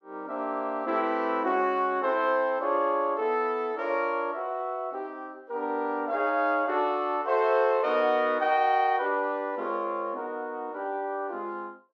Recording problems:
none

